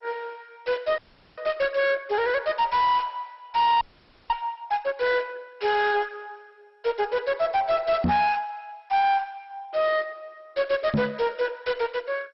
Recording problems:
lossy codec; MP2, log-spectral distance 5 dB, nothing above 5.5 kHz
distortion; soft clipping, signal-to-distortion ratio 7 dB
audio freezing; at 1 s and at 4 s
microphone thump; at 8 s and at 11 s; peak +4 dB vs average level

